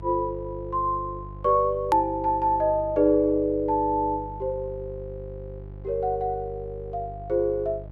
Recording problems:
electrical hum; 50 Hz, harmonics up to 850 Hz, SNR 15 dB
hard cut with a click; at 2 s

